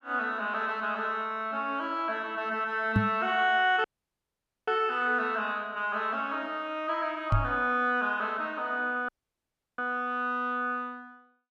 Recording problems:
microphone thump; at 3 s and at 7.5 s; peak +8 dB vs average level
dropout; at 4 s for 1 s and at 9 s for 0.5 s

